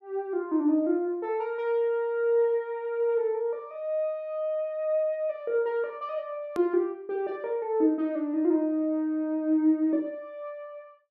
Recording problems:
edit click; at 6.5 s

